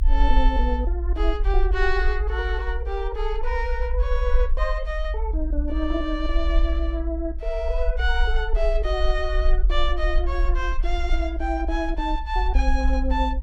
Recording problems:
rumble; below 56 Hz, SNR -2 dB

